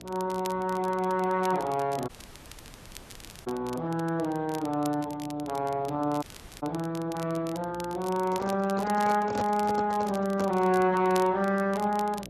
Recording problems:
lossy codec; Speex, log-spectral distance 2 dB
hum; 60 Hz, harmonics up to 720 Hz, SNR 19 dB
crackle; vinyl, SNR 19 dB
dropout; at 2 s for 1.5 s and at 6 s
handling noise; from 8.5 to 11 s; peak +1 dB vs average level

